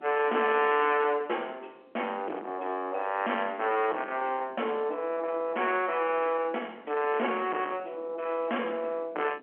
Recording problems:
phone line; 280 Hz to 3.3 kHz, G.711
distortion; soft clipping, signal-to-distortion ratio 9 dB
wind on the microphone; below 1.6 kHz, SNR 20 dB

